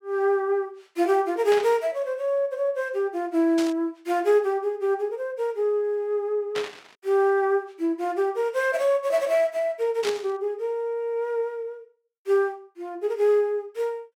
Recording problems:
static burst; 4 times, first at 1.5 s; peak -3 dB vs average level

